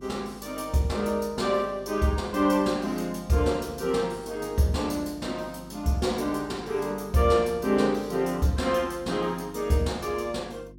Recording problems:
hum; 50 Hz, harmonics up to 350 Hz, SNR 22 dB

